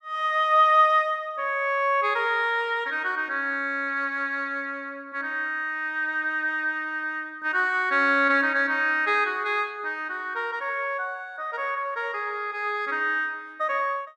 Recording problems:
none

